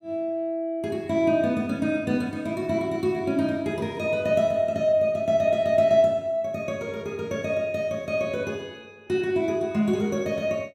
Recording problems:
none

